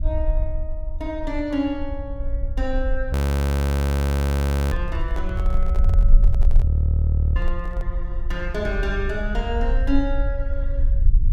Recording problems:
rumble; below 72 Hz, SNR -6 dB
audio freezing; at 3 s for 1.5 s and at 6.5 s for 0.5 s
microphone handling noise; from 4.5 to 8 s; peak -5 dB vs average level

